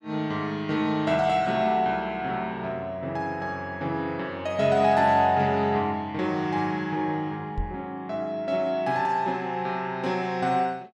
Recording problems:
microphone bump; at 7.5 s; peak -2 dB vs average level

